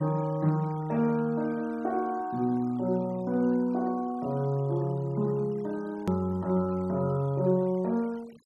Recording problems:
noise reduction artefacts; signal-to-artefact ratio 25 dB
click at an edit; at 6 s

